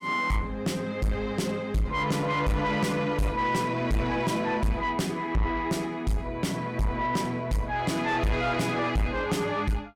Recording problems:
distorted audio; soft clipping, signal-to-distortion ratio 7 dB

